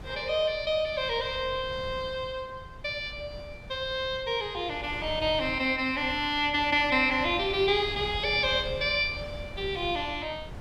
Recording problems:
wind noise; below 260 Hz, SNR 16 dB

